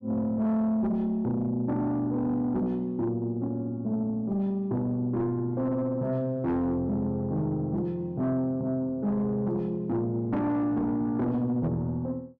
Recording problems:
distorted audio; soft clipping, signal-to-distortion ratio 12 dB

